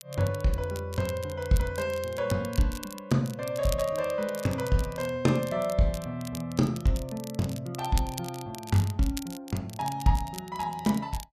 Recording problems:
crackle; vinyl, SNR 15 dB

